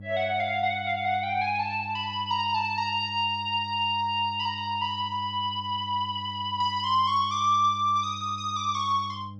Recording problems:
electrical hum; 50 Hz, harmonics up to 500 Hz, SNR 16 dB

